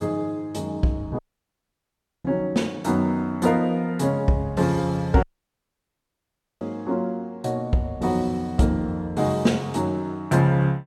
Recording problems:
dropout; at 1 s for 1 s and at 5 s for 1.5 s

